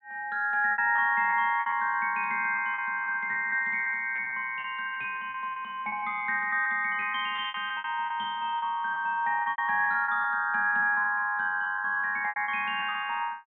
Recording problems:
low-pass filter; nothing above 4 kHz
lost packets; 13% of the sound replaced, filled with repeated pitch periods

